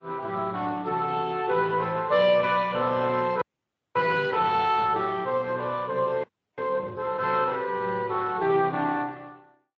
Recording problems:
codec artefacts; AAC, then Speex, log-spectral distance 4 dB
audio freezing; at 3.5 s for 0.5 s and at 6 s

